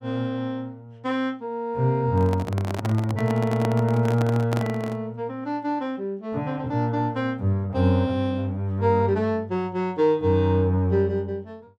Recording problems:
microphone handling noise; from 2 to 5 s; peak -2 dB vs average level

